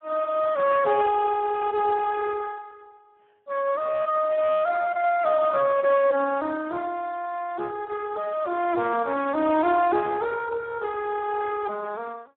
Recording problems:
telephone audio; 240 Hz to 2.8 kHz, Speex

